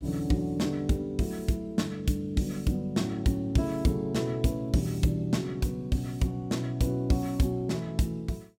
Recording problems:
none

